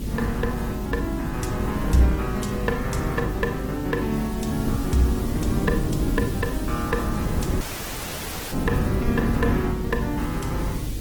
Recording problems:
lossy compression; Opus, log-spectral distance 5 dB, nothing above 19.5 kHz
electrical hum; 50 Hz, harmonics up to 300 Hz, SNR 7 dB
hiss; SNR 16 dB
wind on the microphone; below 240 Hz, SNR 3 dB
dropout; at 7.5 s for 1 s

